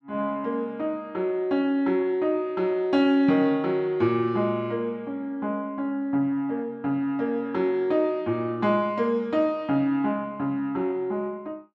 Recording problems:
none

